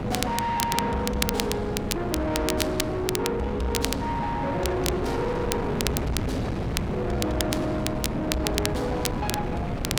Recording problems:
distorted audio; soft clipping, signal-to-distortion ratio 8 dB
wind noise; below 540 Hz, SNR 3 dB
crackling; vinyl, SNR 5 dB

